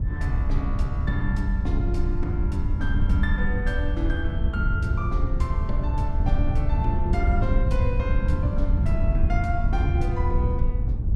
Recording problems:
wind noise; below 86 Hz, SNR -6 dB

